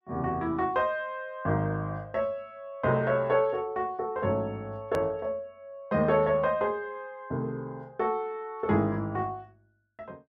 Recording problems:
hard cut with a click; at 5 s

